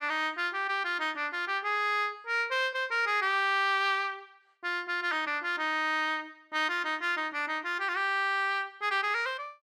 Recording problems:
none

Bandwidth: 14.5 kHz